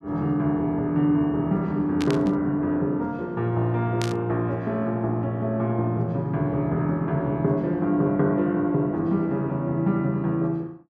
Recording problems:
static burst; at 2 s and at 4 s; peak -5 dB vs average level

